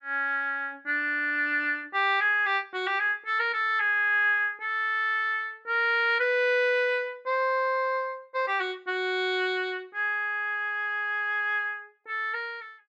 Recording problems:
none

